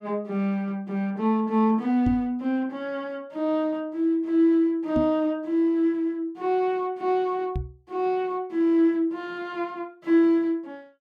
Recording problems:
microphone bump; at 2 s, at 5 s and at 7.5 s; peak +1 dB vs average level

